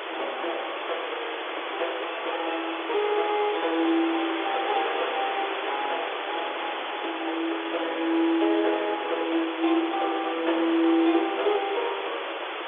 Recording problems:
phone line; 280 Hz to 3.5 kHz, G.711
background hiss; SNR 4 dB

